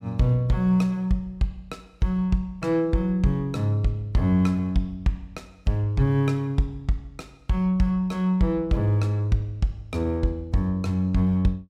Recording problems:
none

